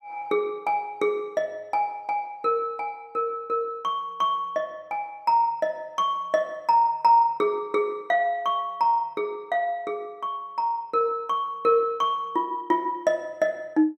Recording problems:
none

